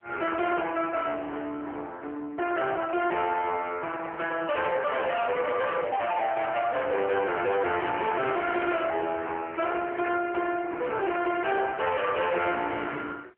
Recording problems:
phone line; 320 Hz to 3.2 kHz, AMR-NB
distortion; hard clipping, uneven, signal-to-distortion ratio 6 dB

